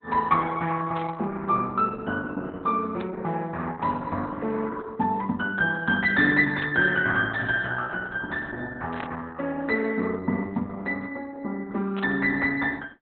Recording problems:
lossy compression; Opus, log-spectral distance 3 dB, nothing above 3.6 kHz
burst of static; 5 times, first at 1 s; peak -7 dB vs average level

